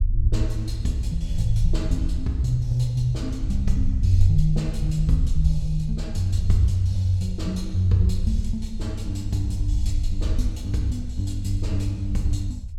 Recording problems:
rumble; below 66 Hz, SNR 3 dB

